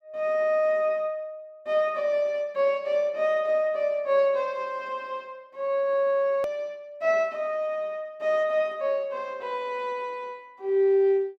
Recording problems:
click at an edit; at 6.5 s

